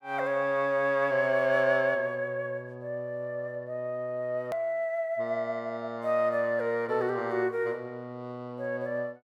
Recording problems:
hard cut with a click; at 4.5 s

